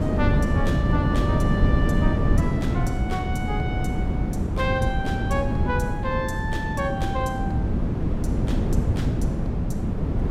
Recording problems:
wind noise; below 230 Hz, SNR -5 dB

